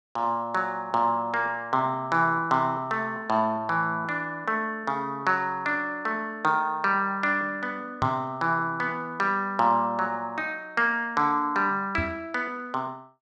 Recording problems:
microphone thump; at 8 s and at 12 s; peak -2 dB vs average level

